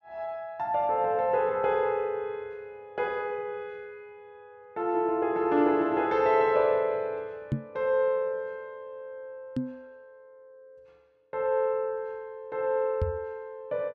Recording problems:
knock on the microphone; at 7.5 s, at 9.5 s and at 13 s; peak +3 dB vs average level

